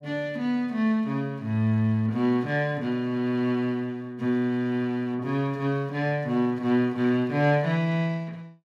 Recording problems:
none

